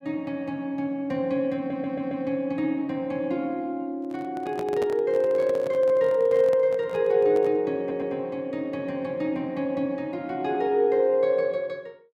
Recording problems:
audio stuttering; at 1.5 s and at 8 s
microphone handling noise; from 4 to 7.5 s; peak -6 dB vs average level

